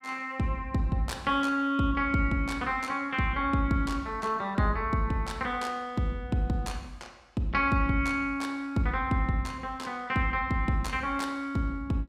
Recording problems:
none

